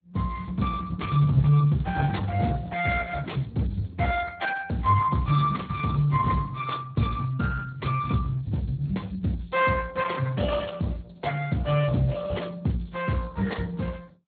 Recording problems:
codec artefacts; Opus, then Speex, log-spectral distance 5 dB

